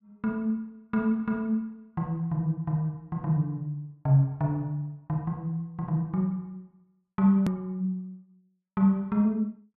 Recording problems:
edit click; at 7.5 s

